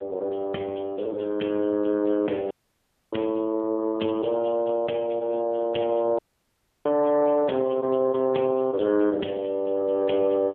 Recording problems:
telephone audio; 170 Hz to 3.3 kHz, AMR-NB
audio cutting out; at 2.5 s for 0.5 s and at 6 s for 0.5 s

